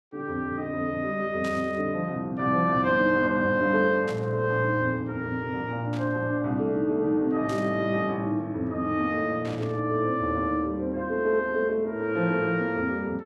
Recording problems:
burst of static; 5 times, first at 1.5 s; peak -12 dB vs average level

